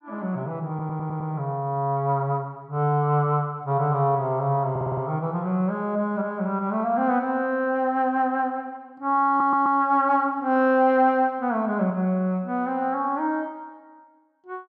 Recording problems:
stutter; at 0.5 s, at 4.5 s and at 9.5 s

